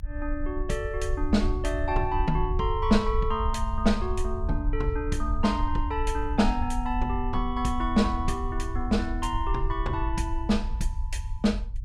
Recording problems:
rumble; below 62 Hz, SNR 4 dB

